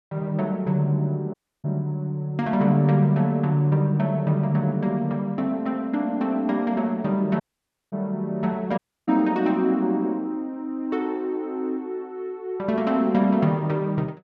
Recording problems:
dropout; at 1.5 s, at 7.5 s for 0.5 s and at 9 s

